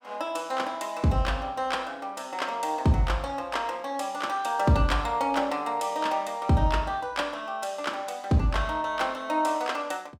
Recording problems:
none

